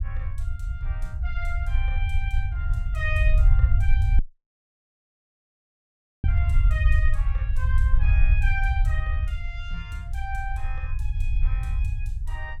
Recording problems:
rumble; below 68 Hz, SNR -10 dB
dropout; at 4 s for 2 s

